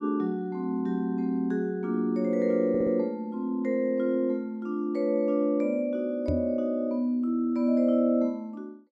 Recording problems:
audio stuttering; at 2.5 s
microphone thump; at 6.5 s; peak +2 dB vs average level

